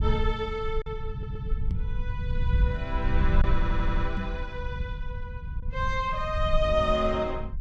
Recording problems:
low-frequency rumble; below 72 Hz, SNR 1 dB
lost packets; 1.2% of the sound replaced, filled with silence
stutter; at 1 s and at 3.5 s
microphone thump; at 1.5 s and at 4 s; peak +3 dB vs average level

